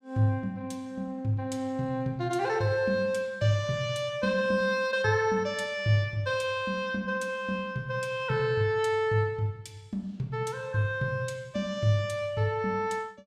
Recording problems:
none

